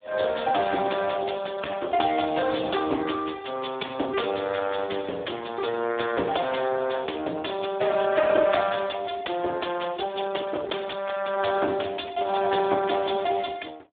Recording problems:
telephone audio; 260 Hz to 2.8 kHz, Speex

